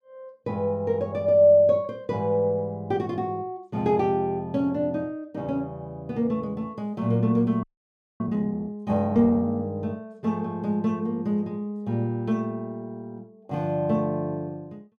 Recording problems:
audio freezing; at 7.5 s for 0.5 s

